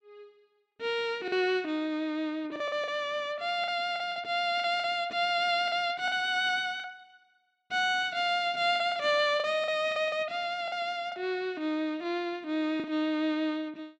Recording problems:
lost packets; 7% of the sound replaced, filled with the last packet

